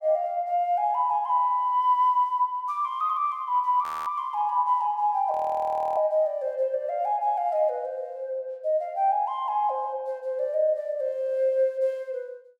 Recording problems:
audio freezing; at 4 s and at 5.5 s for 0.5 s

